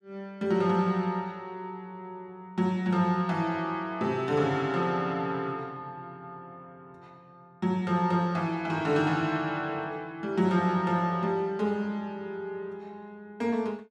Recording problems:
none

